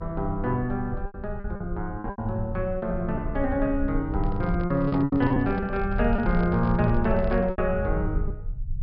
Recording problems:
treble cut off; nothing above 5.5 kHz
low-frequency rumble; below 78 Hz, SNR 7 dB
packet loss; 8% of the sound replaced, filled with repeated pitch periods
handling noise; from 4 to 7.5 s; peak -6 dB vs average level

